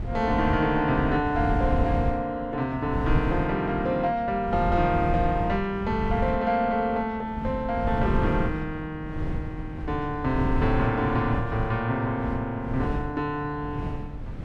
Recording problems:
wind on the microphone; below 160 Hz, SNR 6 dB

